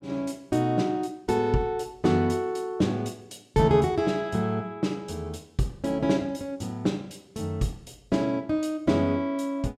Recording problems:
none

